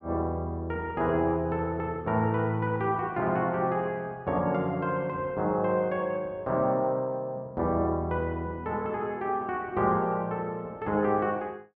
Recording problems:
none

